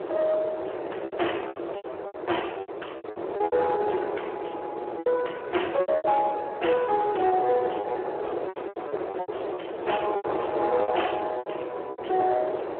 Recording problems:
telephone audio; 280 Hz to 3.2 kHz, Speex
distorted audio; soft clipping, signal-to-distortion ratio 12 dB
wind noise; below 740 Hz, SNR 6 dB
packet loss; 13% of the sound replaced, filled with repeated pitch periods

